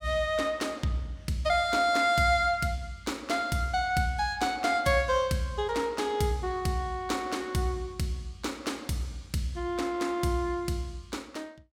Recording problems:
none

